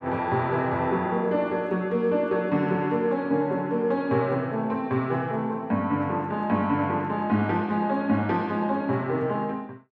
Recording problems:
none

